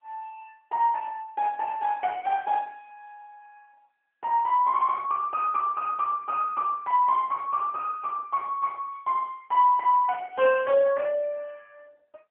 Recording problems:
telephone audio; 320 Hz to 3 kHz, AMR-NB

